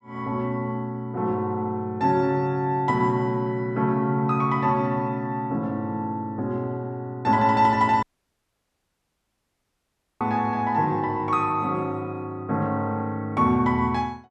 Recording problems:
audio cutting out; at 8 s for 2 s

